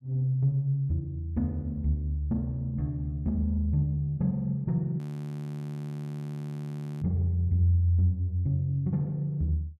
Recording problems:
frozen audio; at 5 s for 2 s

